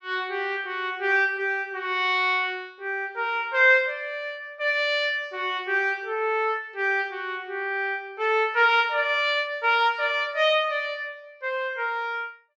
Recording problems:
none

